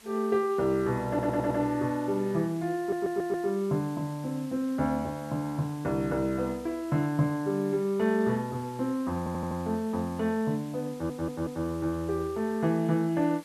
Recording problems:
hiss; slope -1 dB per octave, SNR 22 dB
audio stuttering; 4 times, first at 1 s

